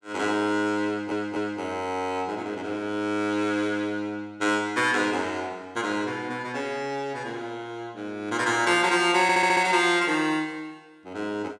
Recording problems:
audio stuttering; at 1 s and at 9 s

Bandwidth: 16.5 kHz